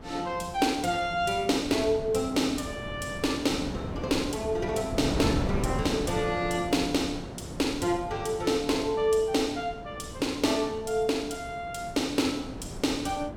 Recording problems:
wind on the microphone; below 450 Hz, SNR 9 dB

